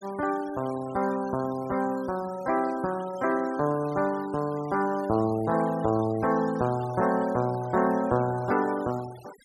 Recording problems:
noise reduction artefacts; signal-to-artefact ratio 20 dB

